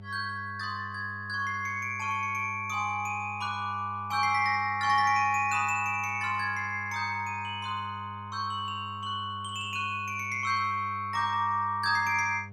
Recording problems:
hum; 50 Hz, harmonics up to 900 Hz, SNR 16 dB

